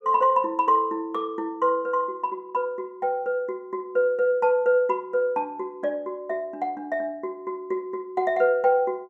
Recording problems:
none

